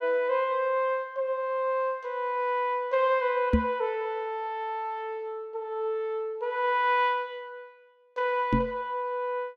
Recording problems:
knock on the microphone; at 3.5 s and at 8.5 s; peak +8 dB vs average level

